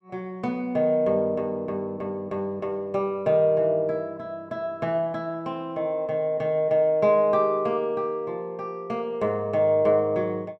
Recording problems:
none

